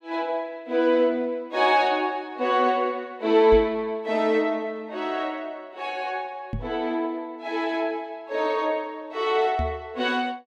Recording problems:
microphone bump; at 3.5 s, at 6.5 s and at 9.5 s; peak -2 dB vs average level

